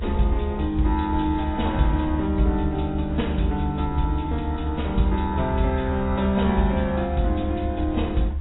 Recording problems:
codec artefacts; AAC, log-spectral distance 4 dB, nothing above 3.8 kHz
rumble; below 76 Hz, strongest tone 70 Hz, SNR 5 dB
wind noise; below 810 Hz, SNR 24 dB

